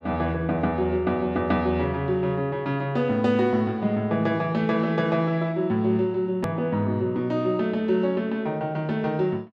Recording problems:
click at an edit; at 6.5 s

